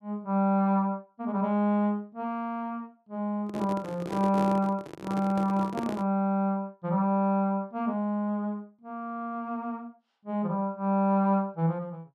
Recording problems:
handling noise; from 3.5 to 6 s; peak -2 dB vs average level

